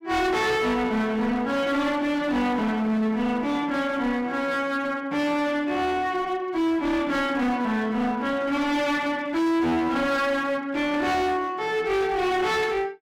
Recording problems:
distorted audio; hard clipping, uneven, signal-to-distortion ratio 7 dB

